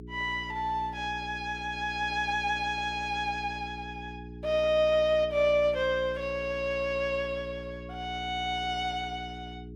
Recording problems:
electrical hum; 60 Hz, harmonics up to 420 Hz, SNR 14 dB

